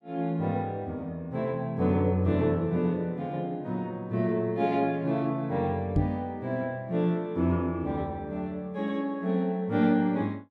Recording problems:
microphone bump; at 6 s; peak +6 dB vs average level

